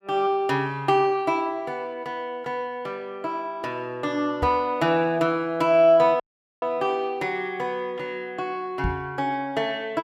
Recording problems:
microphone thump; at 4.5 s and at 9 s; peak 0 dB vs average level
dropout; at 6 s

